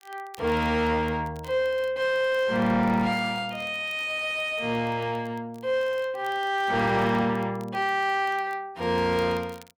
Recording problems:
distorted audio; soft clipping, signal-to-distortion ratio 10 dB
crackle; vinyl, SNR 29 dB

